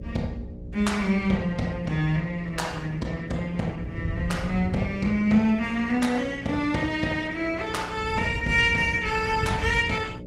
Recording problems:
codec artefacts; Opus, log-spectral distance 3 dB, nothing above 18.3 kHz
hum; 60 Hz, harmonics up to 600 Hz, SNR 14 dB
wind on the microphone; below 110 Hz, SNR 8 dB

